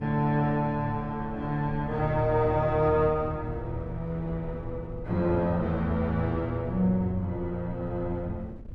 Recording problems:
wind noise; below 120 Hz, SNR 14 dB

